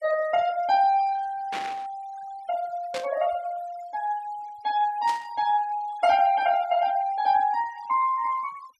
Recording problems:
noise reduction artefacts; signal-to-artefact ratio 21 dB
static burst; at 1.5 s, at 3 s and at 5 s; peak -5 dB vs average level

